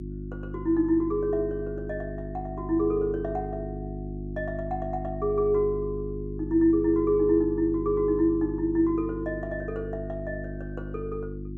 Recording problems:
electrical hum; 50 Hz, harmonics up to 350 Hz, SNR 9 dB

